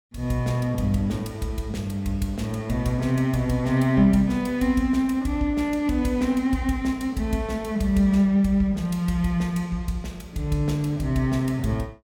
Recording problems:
none

